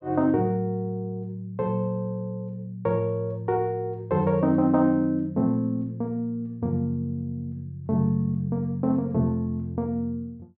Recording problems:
none

